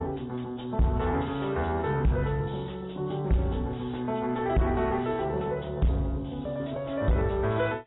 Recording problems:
codec artefacts; AAC, log-spectral distance 4 dB, nothing above 3.8 kHz
distortion; soft clipping, signal-to-distortion ratio 5 dB

